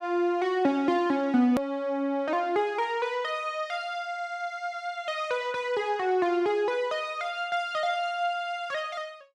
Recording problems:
edit click; at 1.5 s

